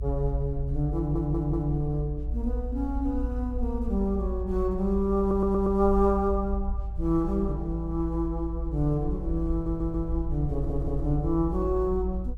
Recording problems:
rumble; below 56 Hz, strongest tone 54 Hz, SNR 5 dB
stutter; 4 times, first at 1 s

